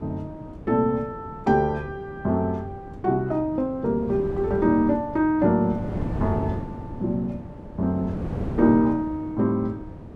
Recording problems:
wind on the microphone; below 330 Hz, SNR 11 dB

